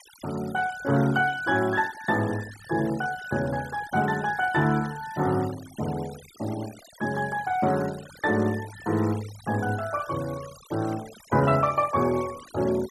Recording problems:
noise reduction artefacts; signal-to-artefact ratio 18 dB

